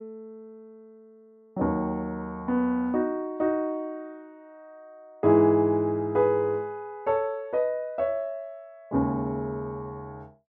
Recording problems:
none

